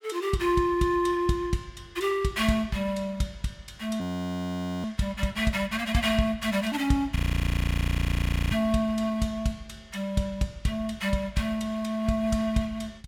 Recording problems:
audio freezing; at 4 s for 1 s and at 7 s for 1.5 s

